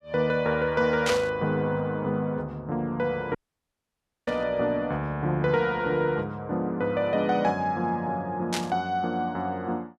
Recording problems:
static burst; at 1 s, at 4.5 s and at 8.5 s; peak +2 dB vs average level
dropout; at 3.5 s for 1 s

